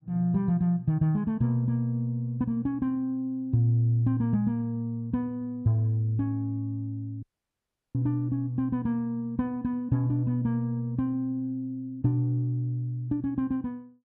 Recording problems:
audio cutting out; at 7 s for 0.5 s

